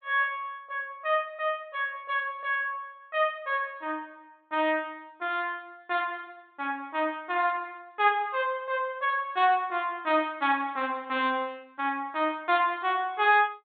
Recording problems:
treble cut off; nothing above 4 kHz

